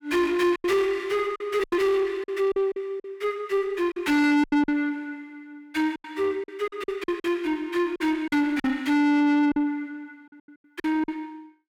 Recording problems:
distorted audio; soft clipping, signal-to-distortion ratio 6 dB
packet loss; 11% of the sound replaced, filled with silence

